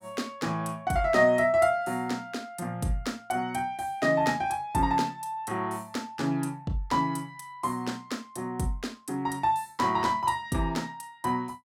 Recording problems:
none

